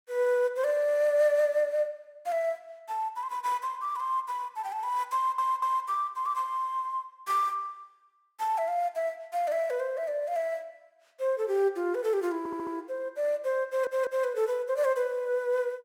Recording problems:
stutter; at 5 s, at 12 s and at 14 s

